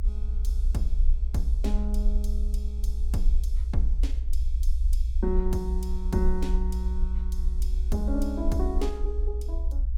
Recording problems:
low-frequency rumble; below 58 Hz, SNR -4 dB

